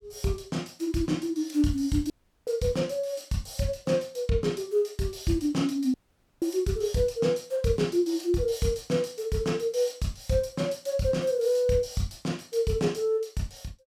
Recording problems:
dropout; at 2 s and at 6 s

